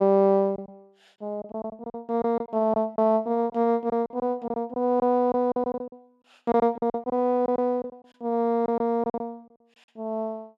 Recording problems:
lost packets; 11% of the sound replaced, filled with silence

